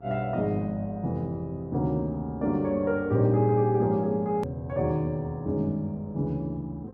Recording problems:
hum; 50 Hz, harmonics up to 1.4 kHz, SNR 25 dB
click at an edit; at 4.5 s

